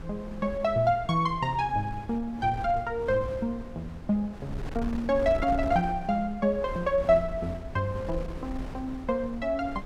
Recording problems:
wind noise; below 220 Hz, SNR 12 dB

